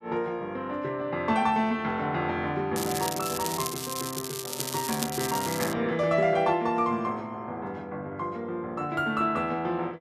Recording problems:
crackling; from 3 to 5.5 s; loose cable, SNR 5 dB

